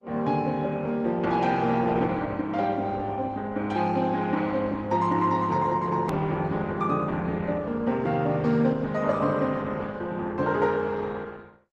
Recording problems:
codec artefacts; Opus, log-spectral distance 3 dB, nothing above 13.1 kHz
click at an edit; at 6 s

